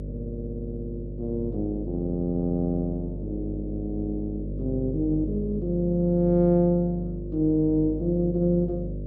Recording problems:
electrical hum; 50 Hz, harmonics up to 600 Hz, SNR 8 dB

